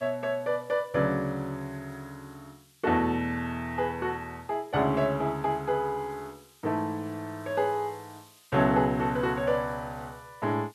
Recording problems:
background hiss; SNR 27 dB

